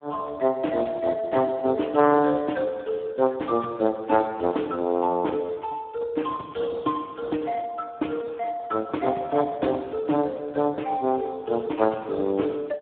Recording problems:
phone line; 150 Hz to 3.1 kHz, Speex

